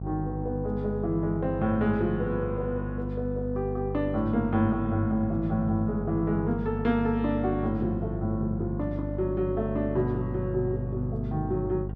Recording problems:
mains hum; 50 Hz, harmonics up to 700 Hz, SNR 6 dB

